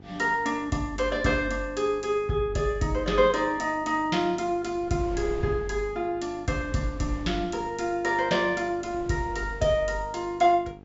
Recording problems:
treble missing; nothing above 8 kHz
mains hum; 50 Hz, harmonics up to 1.3 kHz, SNR 22 dB
wind noise; below 380 Hz, SNR 19 dB

